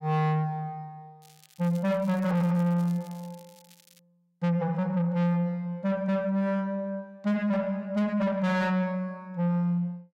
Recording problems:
distortion; soft clipping, signal-to-distortion ratio 7 dB
crackling; from 1 to 4 s; loose cable, SNR 27 dB

